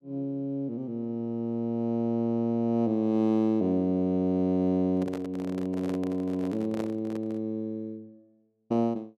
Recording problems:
microphone handling noise; from 5 to 7.5 s; peak -5 dB vs average level

